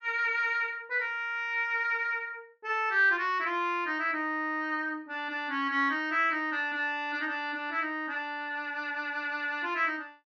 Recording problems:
low-pass filter; nothing above 6.7 kHz

